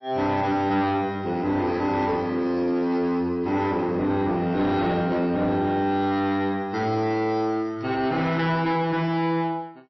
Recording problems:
lossy codec; MP3, log-spectral distance 2 dB, nothing above 5.7 kHz
distortion; soft clipping, signal-to-distortion ratio 10 dB

